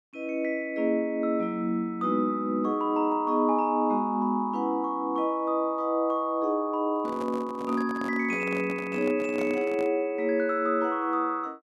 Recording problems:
handling noise; from 7 to 10 s; peak -5 dB vs average level

